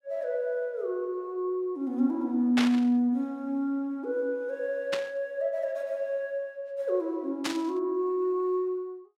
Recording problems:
static burst; at 2.5 s, at 5 s and at 7.5 s; peak +4 dB vs average level

